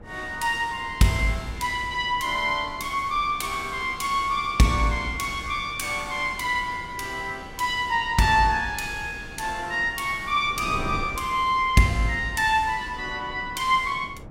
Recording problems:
wind on the microphone; below 360 Hz, SNR 17 dB

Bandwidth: 16 kHz